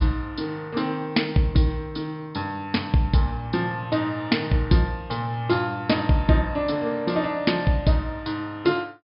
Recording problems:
low-pass filter; nothing above 5.5 kHz

